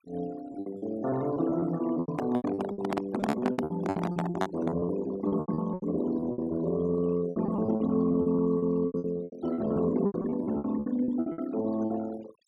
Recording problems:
noise reduction artefacts; signal-to-artefact ratio 17 dB
lost packets; 20% of the sound replaced, filled with repeated pitch periods
microphone handling noise; from 2 to 5 s; peak +3 dB vs average level

